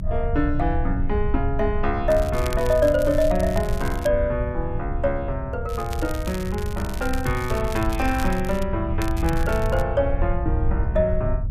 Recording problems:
low-frequency rumble; below 72 Hz, strongest tone 20 Hz, SNR 5 dB
wind on the microphone; below 120 Hz, SNR 9 dB
crackle; from 2 to 4 s, from 5.5 to 8.5 s and at 9 s; loose cable, SNR 15 dB

